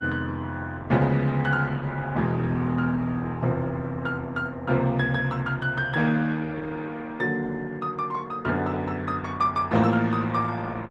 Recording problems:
lossy compression; Opus, log-spectral distance 2 dB, nothing above 11.6 kHz

